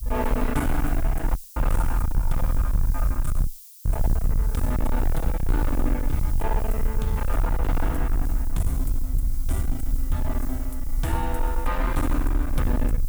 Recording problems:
distorted audio; hard clipping, signal-to-distortion ratio 6 dB
background hiss; SNR 12 dB
rumble; below 52 Hz, SNR -2 dB
dropout; at 1.5 s and at 3.5 s

